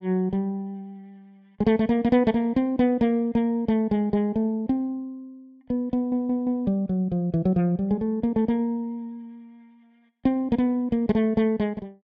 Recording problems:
stutter; at 6 s

